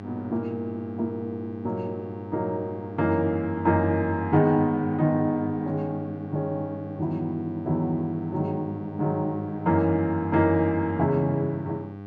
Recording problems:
hum; 50 Hz, harmonics up to 1.6 kHz, SNR 13 dB

